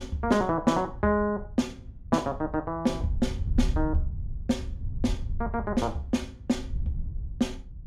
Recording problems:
wind on the microphone; below 84 Hz, SNR 7 dB

